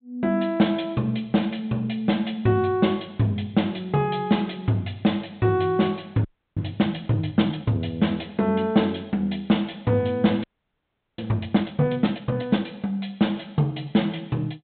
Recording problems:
low-pass filter; nothing above 4 kHz
audio freezing; at 6.5 s and at 10 s for 0.5 s

